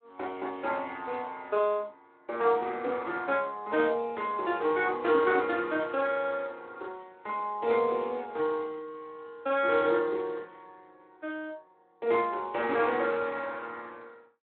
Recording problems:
telephone audio; 280 Hz to 3.8 kHz, Speex

